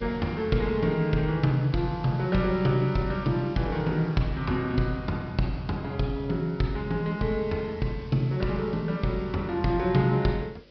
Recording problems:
treble cut off; nothing above 5.5 kHz
hum; 50 Hz, harmonics up to 600 Hz, SNR 30 dB
background hiss; SNR 27 dB

